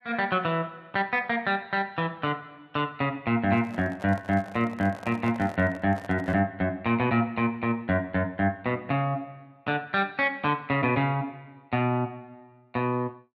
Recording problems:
microphone handling noise; from 3.5 to 6.5 s; peak -9 dB vs average level

